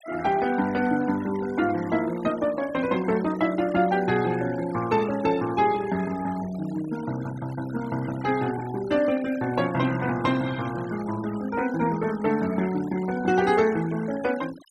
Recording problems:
denoising artefacts; signal-to-artefact ratio 17 dB

